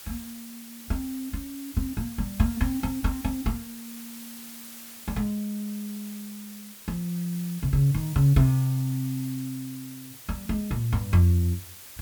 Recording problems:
background hiss; slope +1 dB per octave, SNR 14 dB

